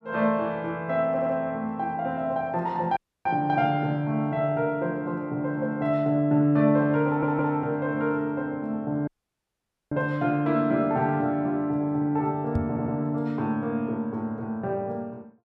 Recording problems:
audio stuttering; at 1 s, at 7 s and at 13 s
audio cutting out; at 3 s and at 9 s for 1 s
microphone thump; at 13 s; peak +2 dB vs average level

